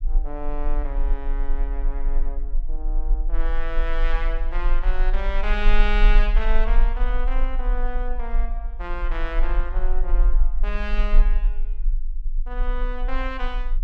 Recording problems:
rumble; below 36 Hz, strongest tone 18 Hz, SNR -6 dB

